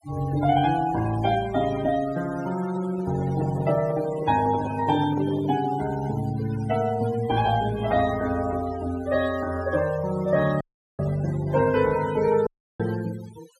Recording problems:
denoising artefacts; signal-to-artefact ratio 15 dB
microphone handling noise; from 2.5 to 6 s; peak -5 dB vs average level
audio cutting out; at 11 s and at 12 s

